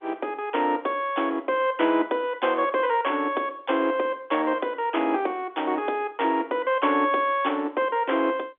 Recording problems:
phone line; 240 Hz to 3.5 kHz, G.711

